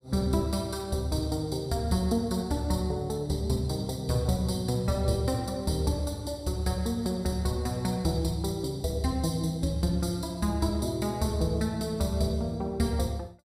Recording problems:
none

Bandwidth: 15.5 kHz